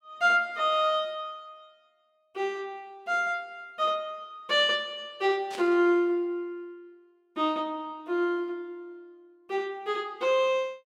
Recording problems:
burst of static; at 5.5 s; peak -8 dB vs average level

